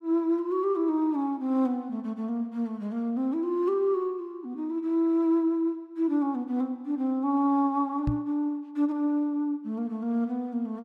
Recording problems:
microphone thump; at 8 s; peak +3 dB vs average level

